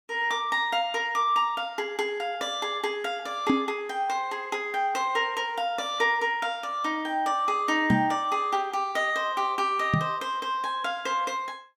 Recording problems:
knock on the microphone; at 3.5 s, at 8 s and at 10 s; peak +7 dB vs average level

